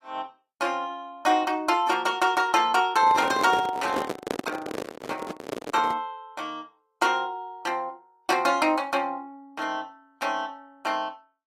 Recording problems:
codec artefacts; AAC, log-spectral distance 2 dB
microphone handling noise; from 3 to 6 s; peak +1 dB vs average level

